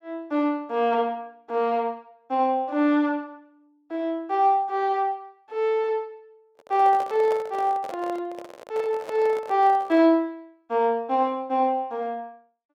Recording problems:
microphone handling noise; from 6.5 to 10 s; peak -7 dB vs average level

